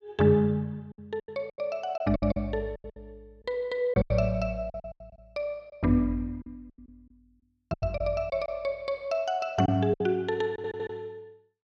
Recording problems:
lost packets; 12% of the sound replaced, filled with silence
audio stuttering; at 10 s

